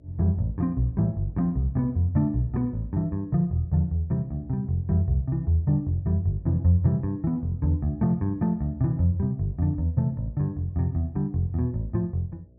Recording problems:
hum; 60 Hz, harmonics up to 660 Hz, SNR 30 dB

